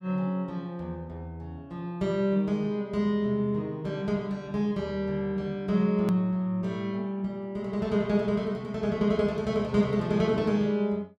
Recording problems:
hard cut with a click; at 6 s

